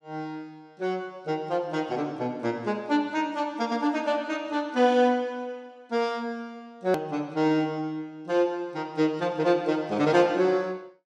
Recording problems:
click at an edit; at 7 s

